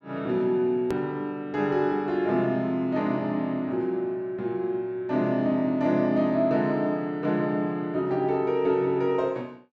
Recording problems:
edit click; at 1 s

